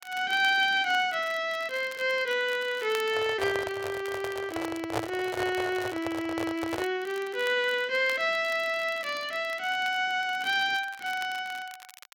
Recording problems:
crackling; vinyl, SNR 20 dB
microphone handling noise; from 3 to 7 s; peak +2 dB vs average level

